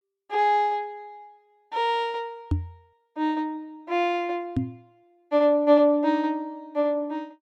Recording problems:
microphone thump; at 2.5 s and at 4.5 s; peak +3 dB vs average level

